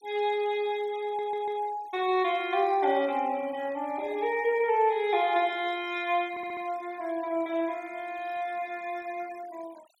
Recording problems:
denoising artefacts; signal-to-artefact ratio 22 dB
audio stuttering; at 1 s and at 6.5 s

